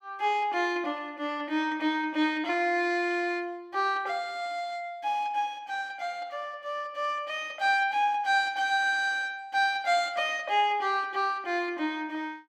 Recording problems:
none

